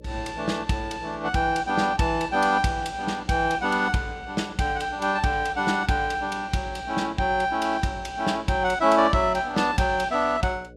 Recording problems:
hum; 60 Hz, harmonics up to 600 Hz, SNR 23 dB

